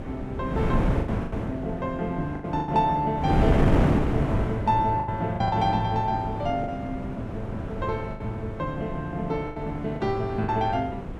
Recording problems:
wind on the microphone; below 370 Hz, SNR 2 dB
packet loss; 7% of the sound replaced, filled with the last packet

